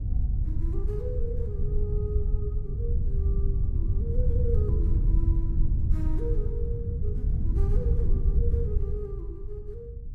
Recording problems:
wind noise; below 82 Hz, SNR -12 dB

